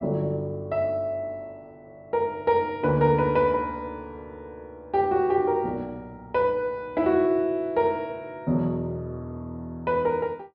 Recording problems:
low-pass filter; nothing above 5.5 kHz

